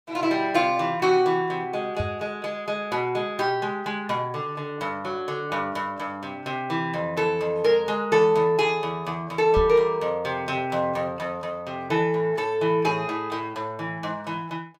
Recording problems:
knock on the microphone; at 2 s and at 9.5 s; peak 0 dB vs average level

